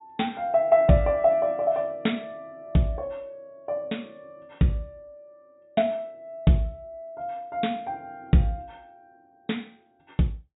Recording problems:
treble cut off; nothing above 4 kHz

